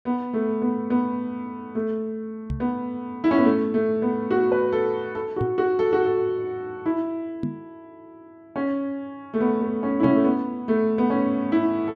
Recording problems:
knock on the microphone; 4 times, first at 2.5 s; peak 0 dB vs average level

